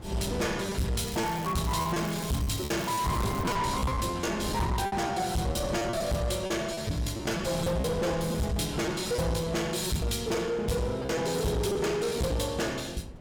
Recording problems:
distortion; soft clipping, signal-to-distortion ratio 7 dB
wind on the microphone; below 500 Hz, SNR 11 dB
lost packets; 9% of the sound replaced, filled with repeated pitch periods
crackle; from 1 to 3.5 s; loose cable, SNR 13 dB

